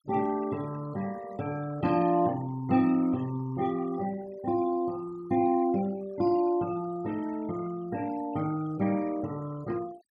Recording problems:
denoising artefacts; signal-to-artefact ratio 20 dB

